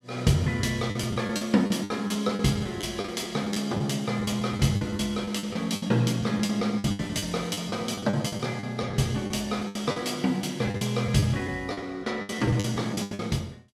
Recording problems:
lost packets; 15% of the sound replaced, filled with the last packet

